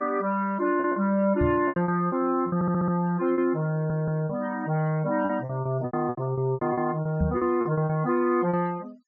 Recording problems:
treble missing; nothing above 8 kHz
noise reduction artefacts; signal-to-artefact ratio 27 dB
lost packets; 13% of the sound replaced, filled with repeated pitch periods
knock on the microphone; at 1.5 s and at 7 s; peak +3 dB vs average level
stutter; at 2.5 s and at 3.5 s

